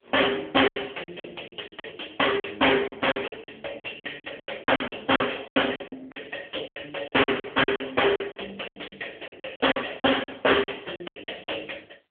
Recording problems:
telephone audio; 300 Hz to 3.3 kHz, AMR-NB
distorted audio; soft clipping, signal-to-distortion ratio 9 dB
lost packets; 17% of the sound replaced, filled with silence

